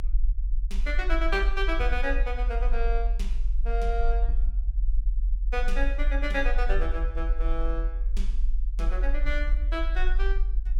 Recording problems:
low-frequency rumble; below 44 Hz, strongest tone 22 Hz, SNR -3 dB

